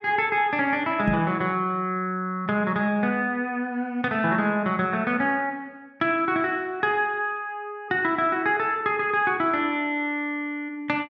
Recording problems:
microphone thump; at 1 s; peak +1 dB vs average level

